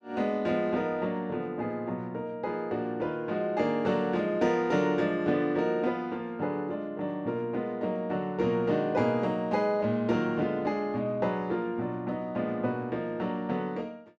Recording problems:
none

